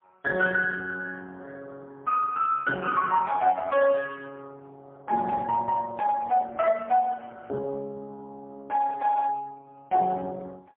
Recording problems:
phone line; 150 Hz to 2.5 kHz, AMR-NB, then MP3

